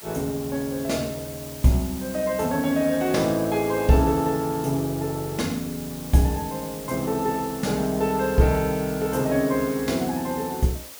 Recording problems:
hiss; SNR 14 dB

